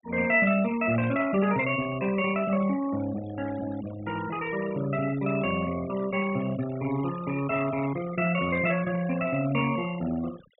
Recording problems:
treble missing; nothing above 4 kHz
denoising artefacts; signal-to-artefact ratio 15 dB

